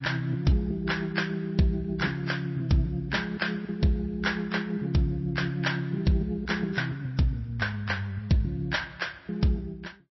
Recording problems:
codec artefacts; MP3, log-spectral distance 3 dB, nothing above 5.7 kHz

